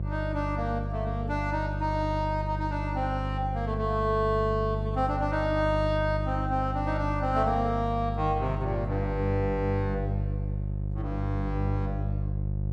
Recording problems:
electrical hum; 50 Hz, harmonics up to 550 Hz, SNR 2 dB

